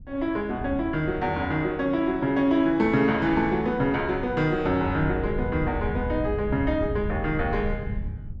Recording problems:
wind on the microphone; below 110 Hz, SNR 10 dB

